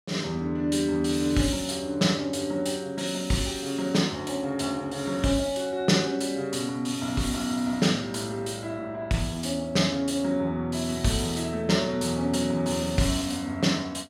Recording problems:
none

